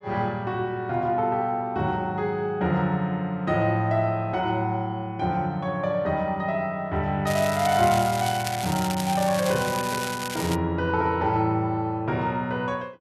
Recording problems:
crackling; from 7.5 to 11 s; loose cable, SNR 8 dB

